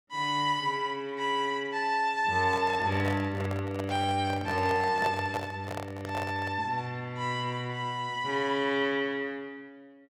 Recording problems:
handling noise; from 2.5 to 6.5 s; peak -1 dB vs average level

